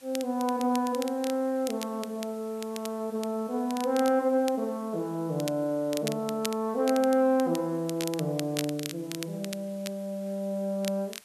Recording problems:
background hiss; slope +1 dB per octave, SNR 24 dB
crackling; vinyl, SNR 12 dB

